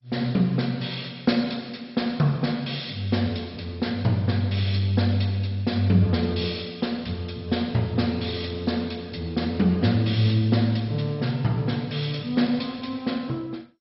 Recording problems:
codec artefacts; MP2, log-spectral distance 4 dB, nothing above 5.3 kHz

